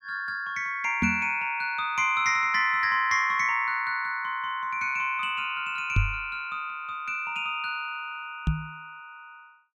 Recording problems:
knock on the microphone; at 1 s, at 6 s and at 8.5 s; peak +5 dB vs average level

